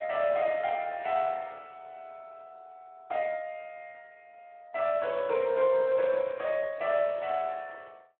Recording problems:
telephone audio; 150 Hz to 3.6 kHz, Speex

